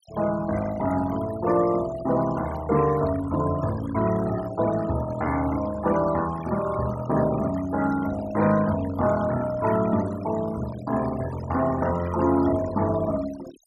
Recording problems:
denoising artefacts; signal-to-artefact ratio 15 dB

